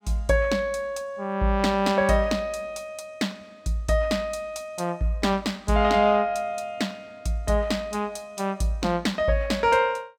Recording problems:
none

